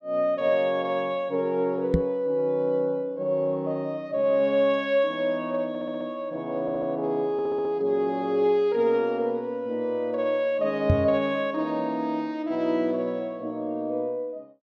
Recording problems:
microphone bump; at 2 s and at 11 s; peak +7 dB vs average level
audio stuttering; at 5.5 s, at 6.5 s and at 7.5 s

